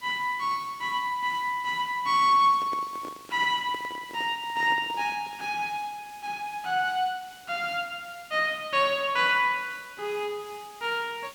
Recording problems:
hiss; slope 0 dB per octave, SNR 23 dB
microphone handling noise; from 2.5 to 5.5 s; peak -9 dB vs average level

